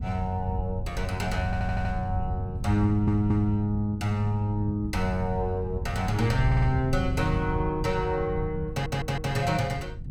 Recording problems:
wind noise; below 120 Hz, SNR 6 dB
audio stuttering; 4 times, first at 1.5 s

